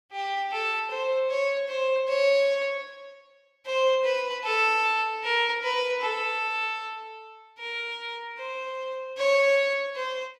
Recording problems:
none

